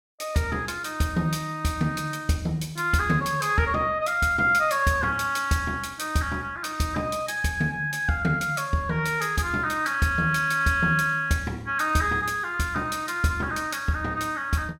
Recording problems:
none

